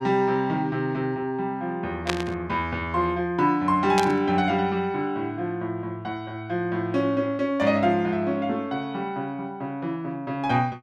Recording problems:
burst of static; at 2 s and at 4 s; peak +4 dB vs average level

